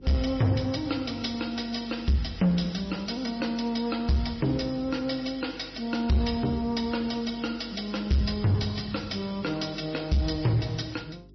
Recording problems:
lossy codec; MP3, log-spectral distance 7 dB, nothing above 5.3 kHz
distorted audio; soft clipping, signal-to-distortion ratio 10 dB
electrical hum; 50 Hz, harmonics up to 400 Hz, SNR 23 dB

